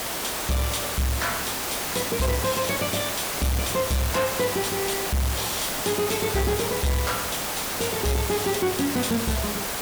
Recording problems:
distortion; soft clipping, signal-to-distortion ratio 11 dB
hiss; slope -3 dB per octave, SNR 1 dB

